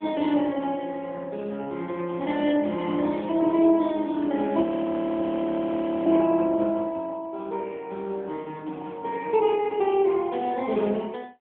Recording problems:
telephone audio; 220 Hz to 3.4 kHz, AMR-NB
frozen audio; at 4.5 s for 1.5 s

